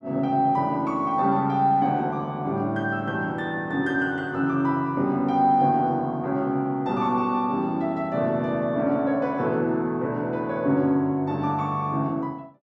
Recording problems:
none

